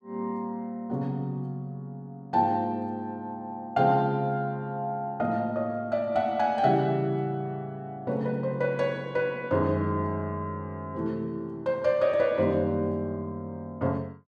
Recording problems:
none

